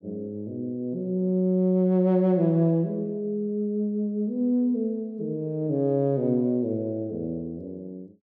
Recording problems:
none

